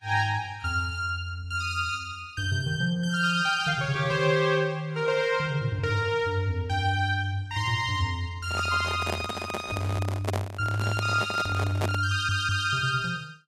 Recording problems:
lossy compression; Vorbis, log-spectral distance 2 dB, nothing above 12.7 kHz
handling noise; from 8.5 to 12 s; peak +2 dB vs average level
audio stuttering; at 12 s

